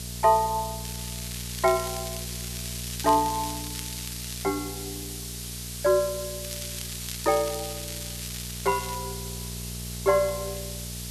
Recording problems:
hum; 60 Hz, harmonics up to 900 Hz, SNR 12 dB
hiss; slope +6 dB per octave, SNR 9 dB
crackle; from 1 to 4.5 s and from 6.5 to 9 s; loose cable, SNR 11 dB

